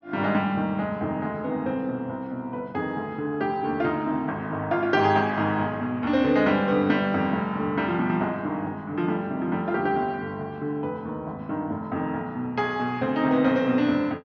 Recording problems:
treble cut off; nothing above 6.2 kHz

